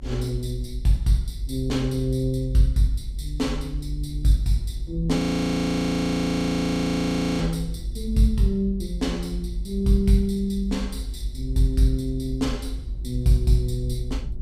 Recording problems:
electrical hum; 60 Hz, harmonics up to 720 Hz, SNR 27 dB
low-frequency rumble; below 56 Hz, strongest tone 48 Hz, SNR 9 dB
frozen audio; at 5 s for 2 s

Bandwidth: 15.5 kHz